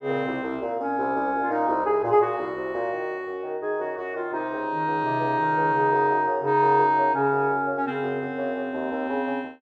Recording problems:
none

